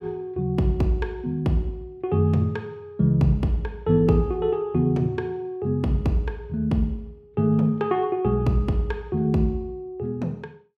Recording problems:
none

